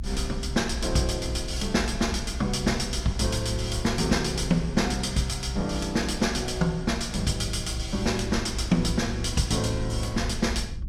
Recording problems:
rumble; below 64 Hz, strongest tone 60 Hz, SNR 8 dB

